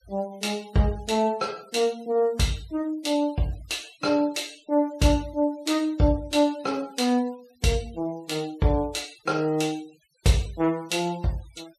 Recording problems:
denoising artefacts; signal-to-artefact ratio 23 dB

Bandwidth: 14 kHz